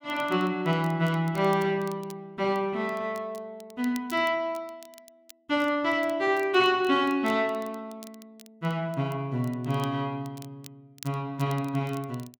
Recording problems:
crackling; vinyl, SNR 24 dB

